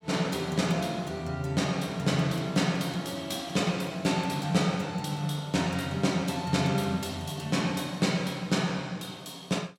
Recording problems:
none

